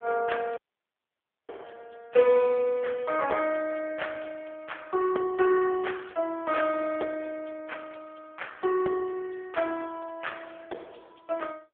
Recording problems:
phone line; 320 Hz to 3.5 kHz, AMR-NB
audio cutting out; at 0.5 s for 1 s

